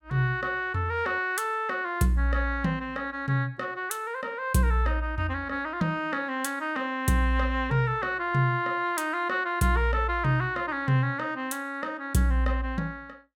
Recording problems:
none

